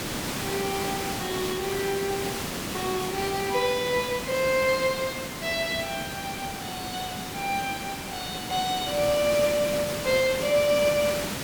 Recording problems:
hiss; slope -3 dB per octave, SNR 5 dB

